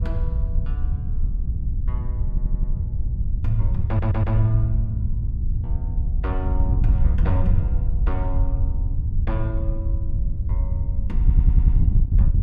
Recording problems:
wind noise; below 74 Hz, SNR -4 dB
stutter; at 2.5 s, at 4 s and at 11 s

